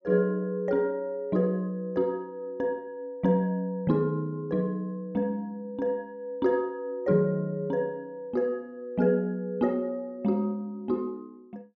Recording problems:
none

